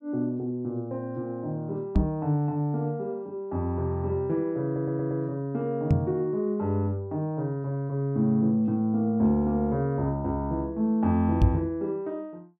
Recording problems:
knock on the microphone; at 2 s, at 6 s and at 11 s; peak +9 dB vs average level
stutter; at 4.5 s

